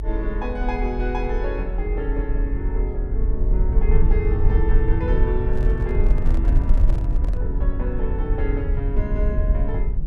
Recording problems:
rumble; below 56 Hz, SNR -6 dB
handling noise; from 5.5 to 7.5 s; peak -5 dB vs average level

